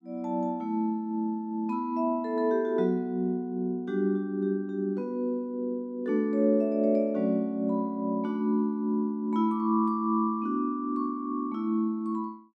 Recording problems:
none

